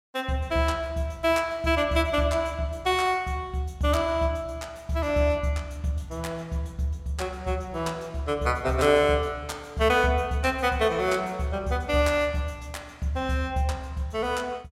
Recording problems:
none

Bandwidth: 16 kHz